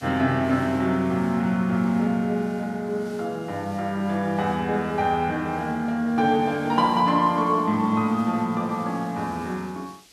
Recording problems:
background hiss; SNR 26 dB

